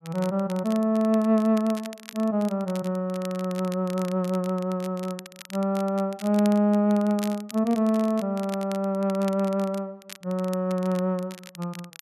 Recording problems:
crackle; vinyl, SNR 19 dB

